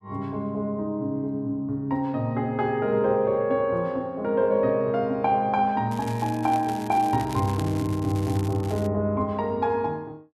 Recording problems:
crackling; from 6 to 9 s; loose cable, SNR 18 dB

